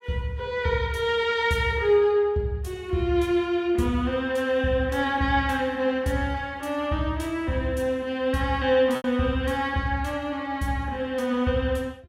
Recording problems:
lost packets; 0.8% of the sound replaced, filled with repeated pitch periods

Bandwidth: 16.5 kHz